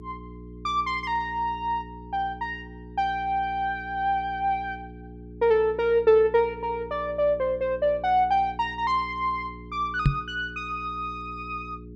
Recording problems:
electrical hum; 60 Hz, harmonics up to 420 Hz, SNR 17 dB
microphone thump; at 10 s; peak +8 dB vs average level

